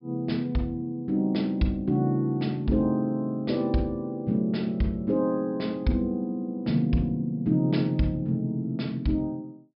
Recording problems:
treble cut off; nothing above 5.3 kHz

